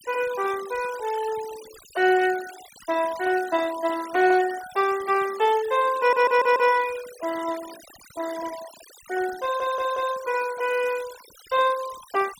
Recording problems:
denoising artefacts; signal-to-artefact ratio 18 dB
audio stuttering; at 6 s and at 9.5 s

